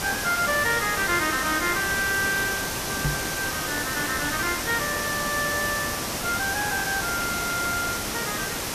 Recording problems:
background hiss; slope -3 dB per octave, SNR 1 dB
knock on the microphone; at 3 s; peak +2 dB vs average level

